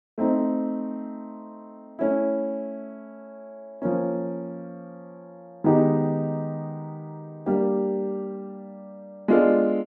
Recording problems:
none

